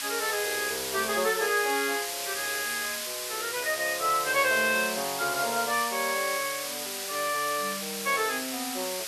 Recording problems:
background hiss; slope +3 dB per octave, SNR 3 dB

